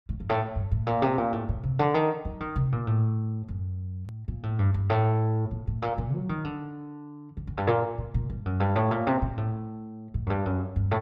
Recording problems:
click at an edit; at 4 s

